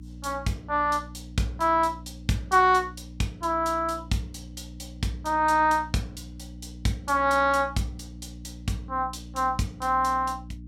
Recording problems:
electrical hum; 60 Hz, harmonics up to 300 Hz, SNR 17 dB

